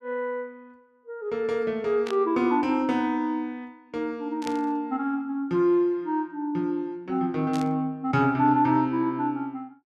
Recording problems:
static burst; at 2 s, at 4.5 s and at 7.5 s; peak -7 dB vs average level

